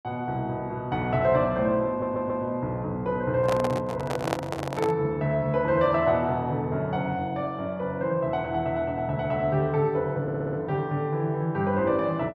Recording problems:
audio stuttering; at 2 s and at 10 s
microphone handling noise; from 3.5 to 5 s; peak +3 dB vs average level

